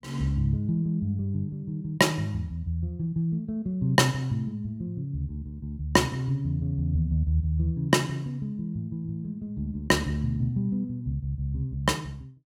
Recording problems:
none

